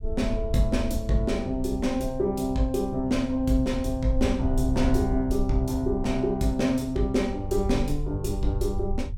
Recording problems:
rumble; below 74 Hz, SNR 7 dB

